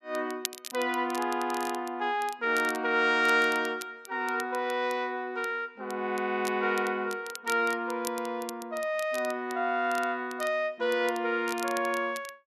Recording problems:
crackle; vinyl, SNR 15 dB

